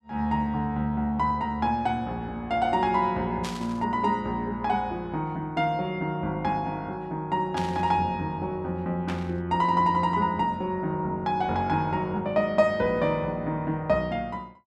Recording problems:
burst of static; at 3.5 s, at 7.5 s and at 9 s; peak -5 dB vs average level

